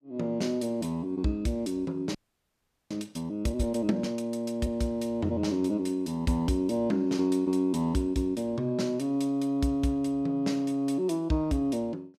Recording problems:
frozen audio; at 2 s for 1 s

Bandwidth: 14.5 kHz